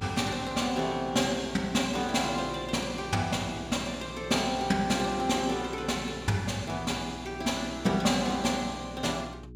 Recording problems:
hum; 60 Hz, harmonics up to 420 Hz, SNR 17 dB

